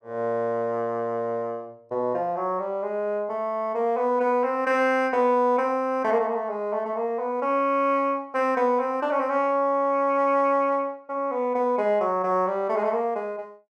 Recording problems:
none

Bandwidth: 12.5 kHz